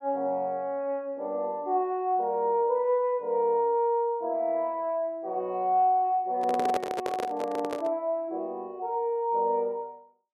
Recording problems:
handling noise; from 6.5 to 8 s; peak +1 dB vs average level

